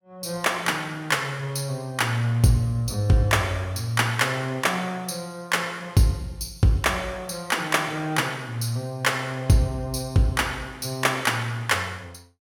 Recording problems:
none

